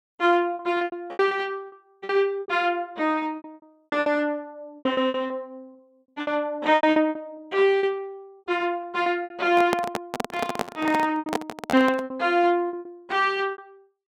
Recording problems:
packet loss; 15% of the sound replaced, filled with repeated pitch periods
handling noise; from 9.5 to 12 s; peak +3 dB vs average level

